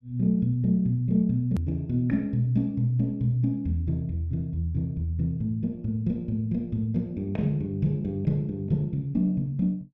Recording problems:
edit click; at 1.5 s

